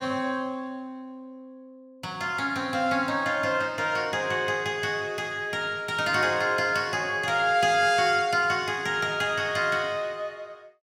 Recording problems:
none

